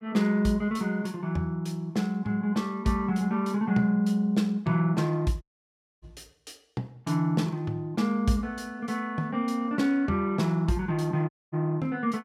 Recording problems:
audio cutting out; at 5.5 s for 0.5 s and at 11 s

